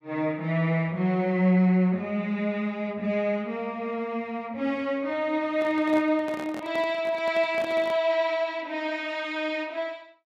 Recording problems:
microphone handling noise; from 5.5 to 8 s; peak -9 dB vs average level

